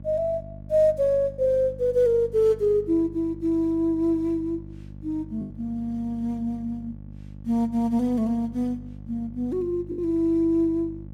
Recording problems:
electrical hum; 50 Hz, harmonics up to 600 Hz, SNR 17 dB
packet loss; 1.8% of the sound replaced, filled with the last packet

